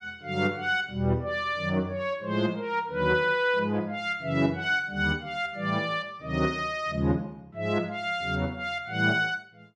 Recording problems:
none

